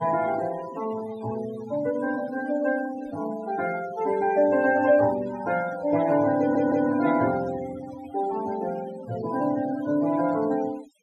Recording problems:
denoising artefacts; signal-to-artefact ratio 15 dB
stutter; at 6.5 s

